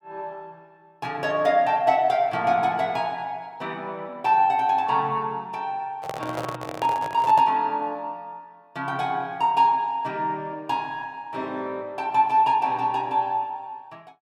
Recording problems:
handling noise; from 6 to 7.5 s; peak -4 dB vs average level

